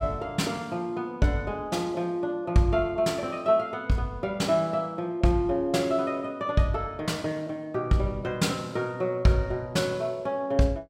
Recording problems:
none

